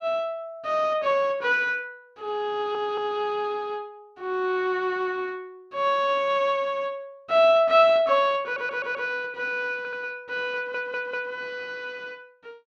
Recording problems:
stutter; 4 times, first at 2.5 s

